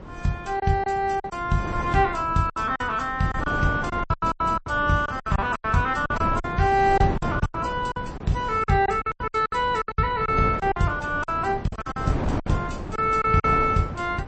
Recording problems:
lossy compression; MP3, log-spectral distance 2 dB, nothing above 8 kHz
wind noise; below 490 Hz, SNR 9 dB
packet loss; 13% of the sound replaced, filled with silence

